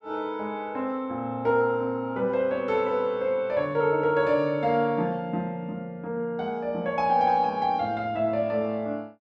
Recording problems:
none

